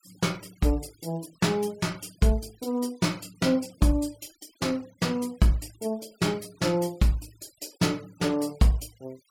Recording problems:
noise reduction artefacts; signal-to-artefact ratio 24 dB

